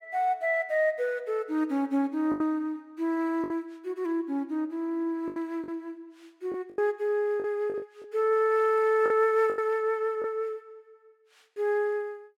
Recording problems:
lost packets; 6% of the sound replaced, filled with the last packet

